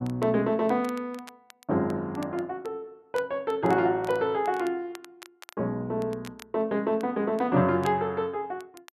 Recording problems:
crackle; vinyl, SNR 23 dB

